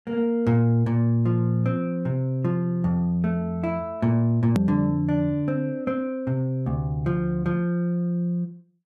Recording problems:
hard cut with a click; at 4.5 s

